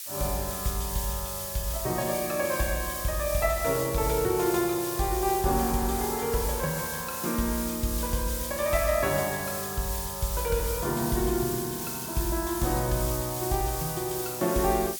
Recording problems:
hiss; slope +7 dB per octave, SNR 4 dB

